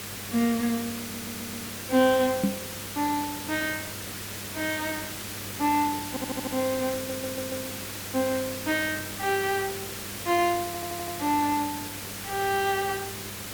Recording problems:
hum; 50 Hz, harmonics up to 700 Hz, SNR 18 dB
background hiss; slope -2 dB per octave, SNR 6 dB
audio stuttering; 4 times, first at 1 s
microphone bump; at 2.5 s; peak +7 dB vs average level

